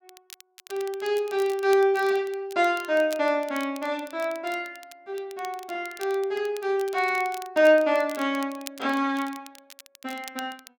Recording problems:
crackle; vinyl, SNR 20 dB

